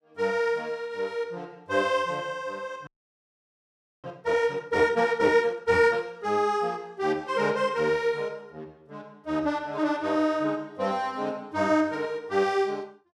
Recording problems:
audio freezing; at 3 s for 1 s

